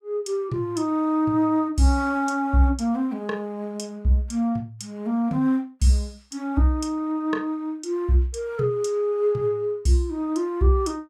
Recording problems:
none

